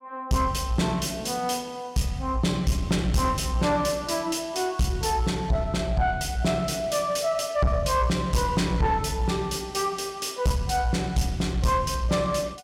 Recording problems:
distorted audio; soft clipping, signal-to-distortion ratio 9 dB

